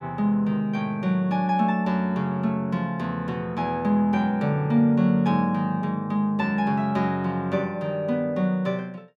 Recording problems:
none

